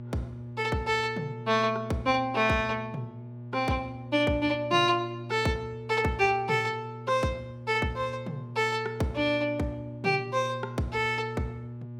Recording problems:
mains hum; 60 Hz, harmonics up to 840 Hz, SNR 13 dB

